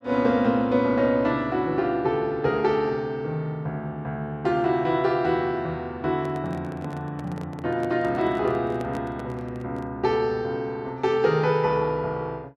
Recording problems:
microphone handling noise; from 6 to 10 s; peak -8 dB vs average level

